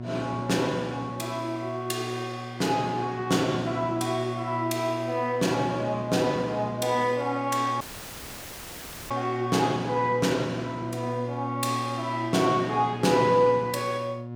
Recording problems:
electrical hum; 60 Hz, harmonics up to 1.1 kHz, SNR 10 dB
dropout; at 8 s for 1.5 s; filled with static

